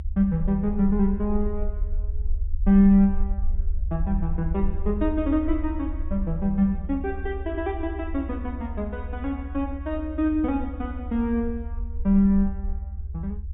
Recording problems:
low-pass filter; nothing above 4 kHz
rumble; below 72 Hz, SNR 7 dB

